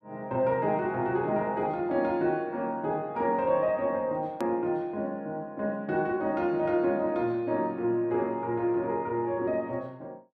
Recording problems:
click at an edit; at 4.5 s

